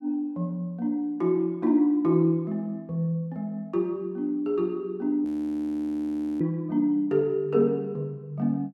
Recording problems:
audio freezing; at 5.5 s for 1 s

